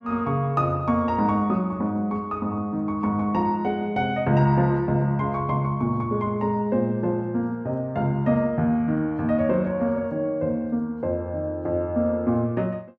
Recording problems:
none

